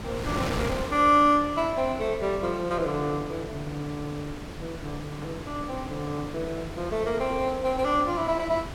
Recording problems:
wind noise; below 1.2 kHz, SNR 10 dB

